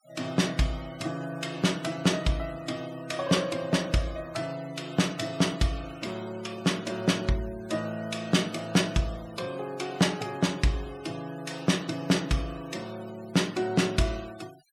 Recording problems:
denoising artefacts; signal-to-artefact ratio 20 dB

